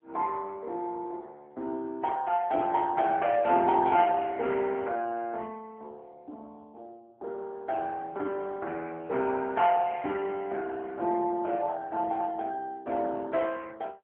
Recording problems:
phone line; 280 Hz to 3.2 kHz, AMR-NB

